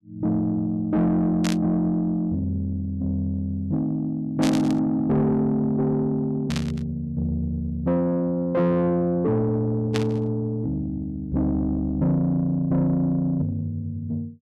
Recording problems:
distorted audio; soft clipping, signal-to-distortion ratio 12 dB
static burst; 4 times, first at 1.5 s; peak -2 dB vs average level

